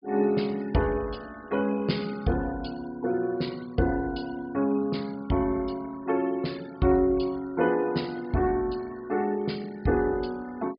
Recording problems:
low-pass filter; nothing above 5.5 kHz
denoising artefacts; signal-to-artefact ratio 23 dB

